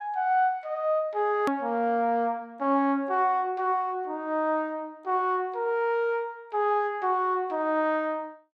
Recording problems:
hard cut with a click; at 1.5 s

